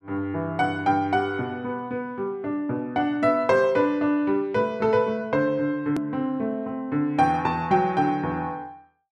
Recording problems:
hard cut with a click; at 6 s

